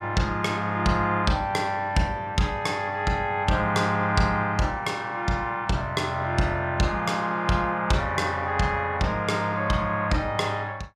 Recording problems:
none

